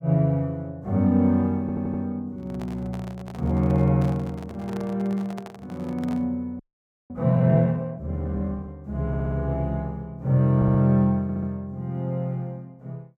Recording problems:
stutter; 4 times, first at 1.5 s
handling noise; from 2.5 to 6.5 s; peak -10 dB vs average level
frozen audio; at 6.5 s for 0.5 s

